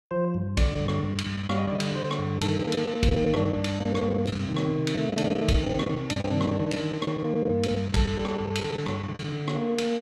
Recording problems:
lost packets; 11% of the sound replaced, filled with the last packet

